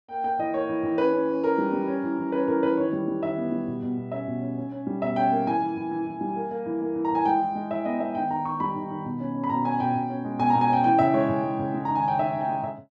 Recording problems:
none

